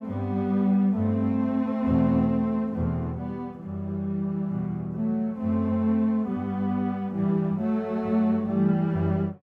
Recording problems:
none

